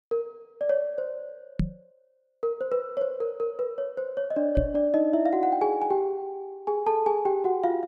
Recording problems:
microphone thump; at 1.5 s and at 4.5 s; peak +5 dB vs average level

